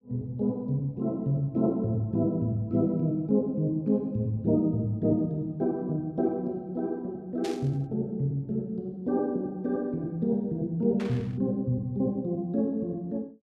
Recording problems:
burst of static; at 7.5 s and at 11 s; peak -7 dB vs average level

